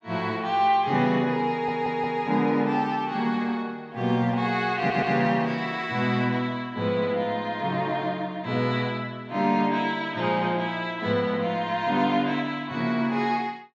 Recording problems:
stutter; at 1.5 s and at 5 s

